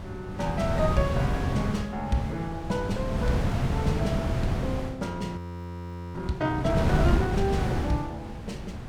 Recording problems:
wind on the microphone; below 240 Hz, SNR -1 dB
frozen audio; at 5.5 s for 1 s

